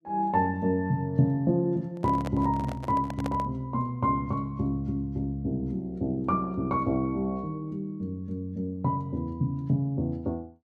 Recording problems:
handling noise; from 2 to 3.5 s; peak -3 dB vs average level

